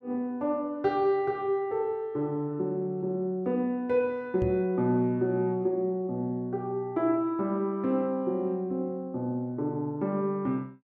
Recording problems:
microphone bump; at 4.5 s; peak -1 dB vs average level

